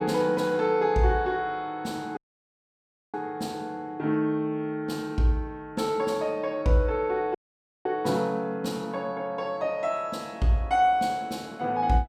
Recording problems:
audio cutting out; at 2 s for 1 s and at 7.5 s for 0.5 s

